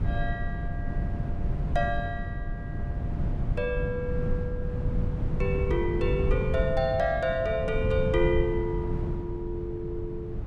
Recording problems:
electrical hum; 60 Hz, harmonics up to 1.2 kHz, SNR 24 dB
wind noise; below 150 Hz, SNR 1 dB

